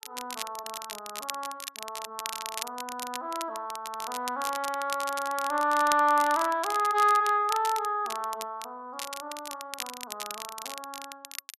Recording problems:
crackling; vinyl, SNR 10 dB

